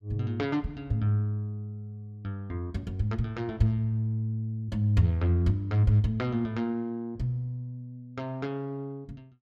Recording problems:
none

